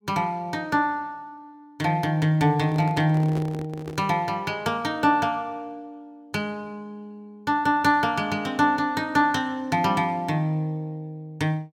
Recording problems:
microphone handling noise; from 2.5 to 4 s; peak -7 dB vs average level

